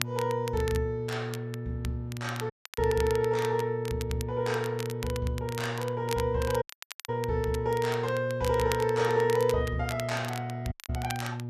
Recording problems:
hum; 60 Hz, harmonics up to 600 Hz, SNR 7 dB
crackling; vinyl, SNR 13 dB
audio cutting out; at 2.5 s, at 6.5 s and at 11 s

